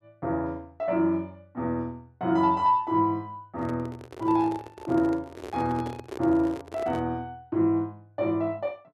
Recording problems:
microphone handling noise; from 3.5 to 7 s; peak -5 dB vs average level

